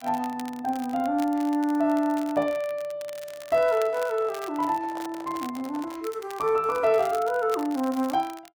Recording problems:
crackle; vinyl, SNR 20 dB
microphone handling noise; from 3.5 to 6 s; peak -9 dB vs average level

